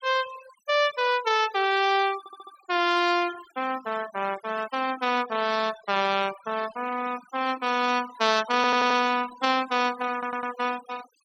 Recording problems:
denoising artefacts; signal-to-artefact ratio 14 dB
audio stuttering; at 2 s, at 8.5 s and at 10 s

